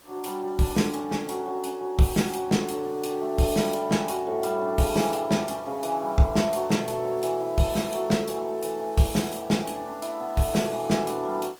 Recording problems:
lossy codec; Opus, log-spectral distance 4 dB, nothing above 19 kHz
background hiss; slope -3 dB per octave, SNR 25 dB

